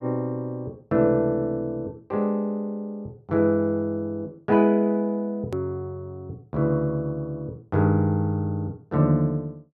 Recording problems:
edit click; at 5.5 s

